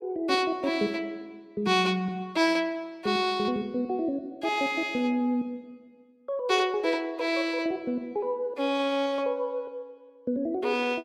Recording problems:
none

